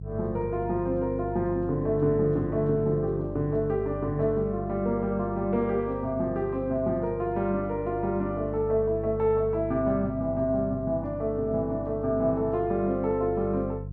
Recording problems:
hum; 50 Hz, harmonics up to 350 Hz, SNR 11 dB

